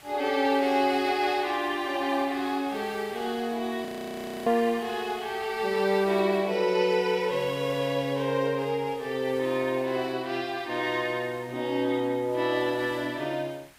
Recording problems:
hiss; SNR 21 dB
audio freezing; at 4 s for 0.5 s

